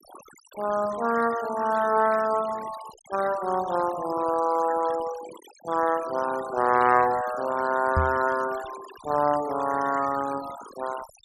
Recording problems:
noise reduction artefacts; signal-to-artefact ratio 16 dB
knock on the microphone; at 8 s; peak +3 dB vs average level

